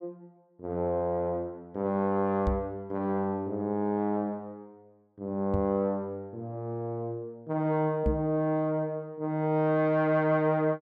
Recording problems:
microphone thump; at 2.5 s, at 5.5 s and at 8 s; peak +3 dB vs average level

